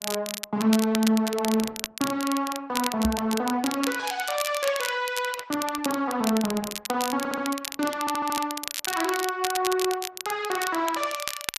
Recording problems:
lossy compression; Opus, log-spectral distance 3 dB, nothing above 11.6 kHz
crackling; vinyl, SNR 6 dB
microphone bump; at 3 s; peak +6 dB vs average level
stutter; at 7 s and at 8 s

